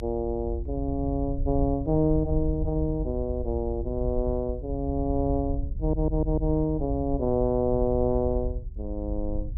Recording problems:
rumble; below 74 Hz, SNR 6 dB
stutter; at 6 s

